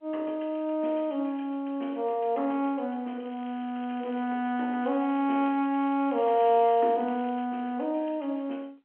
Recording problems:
phone line; 220 Hz to 3.3 kHz, G.711
crackling; from 3.5 to 4.5 s and from 5 to 7.5 s; loose cable, SNR 27 dB

